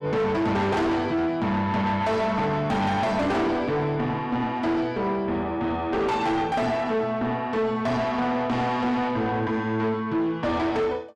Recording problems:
distorted audio; soft clipping, signal-to-distortion ratio 6 dB

